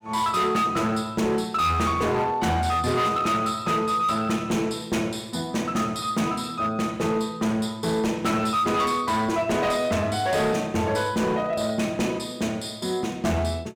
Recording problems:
distortion; hard clipping, signal-to-distortion ratio 10 dB

